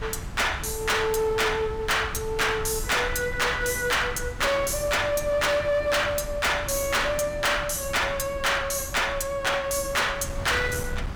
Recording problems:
distortion; hard clipping, signal-to-distortion ratio 6 dB
wind noise; below 230 Hz, SNR 12 dB

